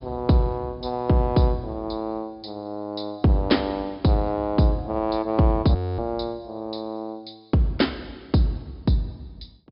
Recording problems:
treble missing; nothing above 5.5 kHz
frozen audio; at 6 s

